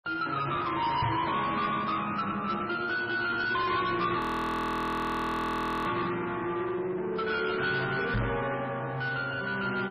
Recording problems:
lossy compression; MP3, log-spectral distance 4 dB, nothing above 14.6 kHz
distortion; soft clipping, signal-to-distortion ratio 8 dB
microphone bump; at 1 s and at 8 s; peak +5 dB vs average level
frozen audio; at 4 s for 1.5 s

